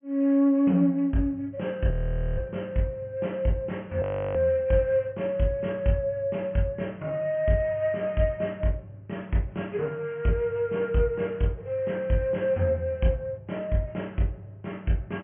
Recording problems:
treble cut off; nothing above 3.1 kHz
frozen audio; at 2 s and at 4 s

